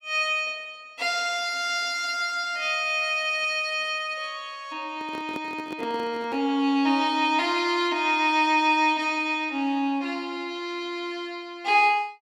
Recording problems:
microphone handling noise; from 5 to 6.5 s; peak -7 dB vs average level

